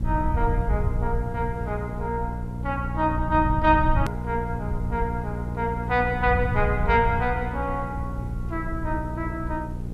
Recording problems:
hum; 60 Hz, harmonics up to 540 Hz, SNR 5 dB
hiss; SNR 21 dB
rumble; below 96 Hz, SNR 5 dB
edit click; at 4 s

